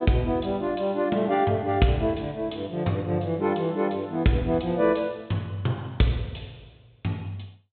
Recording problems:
treble missing; nothing above 4 kHz

